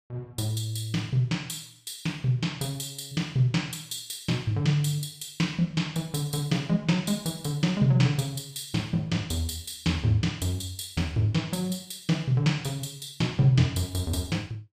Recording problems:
none

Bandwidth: 15 kHz